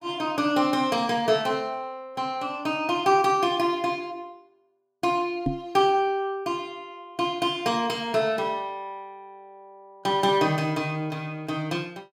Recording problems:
knock on the microphone; at 5.5 s; peak +3 dB vs average level

